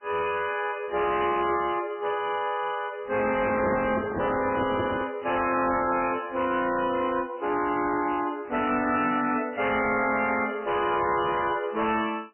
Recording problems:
lossy compression; MP3, log-spectral distance 6 dB, nothing above 2.5 kHz
distorted audio; hard clipping, signal-to-distortion ratio 10 dB
microphone handling noise; from 3.5 to 5 s; peak 0 dB vs average level

